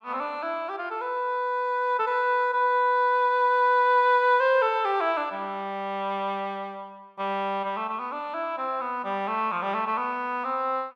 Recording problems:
none

